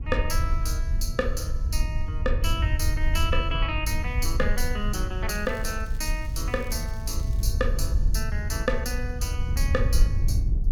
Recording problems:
low-frequency rumble; below 72 Hz, SNR -2 dB
crackling; from 5.5 to 7.5 s; loose cable, SNR 22 dB

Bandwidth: 18 kHz